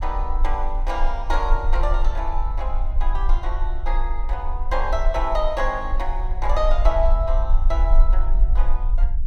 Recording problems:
rumble; below 38 Hz, strongest tone 26 Hz, SNR -3 dB

